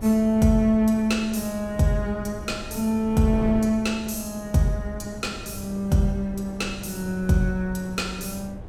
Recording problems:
wind on the microphone; below 270 Hz, SNR 14 dB

